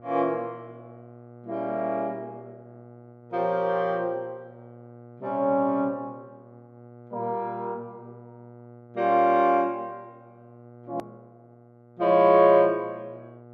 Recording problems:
electrical hum; 60 Hz, harmonics up to 1.4 kHz, SNR 24 dB
edit click; at 11 s

